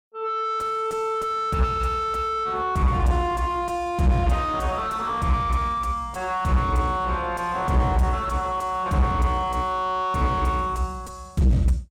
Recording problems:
distorted audio; soft clipping, signal-to-distortion ratio 7 dB

